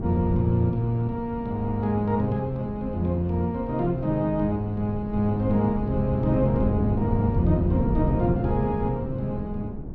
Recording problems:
wind noise; below 230 Hz, SNR 5 dB

